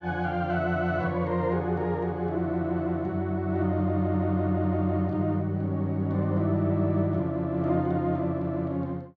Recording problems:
none

